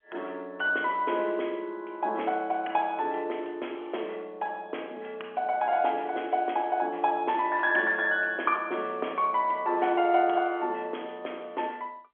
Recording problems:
telephone audio; 280 Hz to 3.4 kHz, G.711

